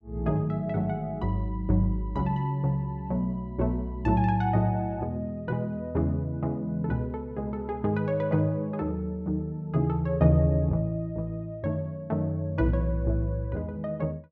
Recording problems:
none

